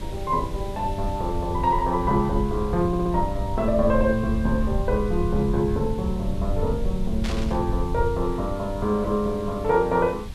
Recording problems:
hiss; SNR 17 dB
low-frequency rumble; below 80 Hz, SNR 7 dB
stutter; at 3 s
static burst; at 7 s; peak -5 dB vs average level

